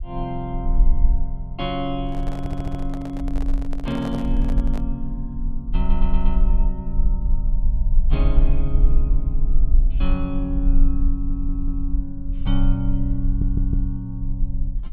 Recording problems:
rumble; below 42 Hz, strongest tone 22 Hz, SNR -4 dB
handling noise; from 2 to 5 s; peak -2 dB vs average level
audio stuttering; 4 times, first at 2.5 s

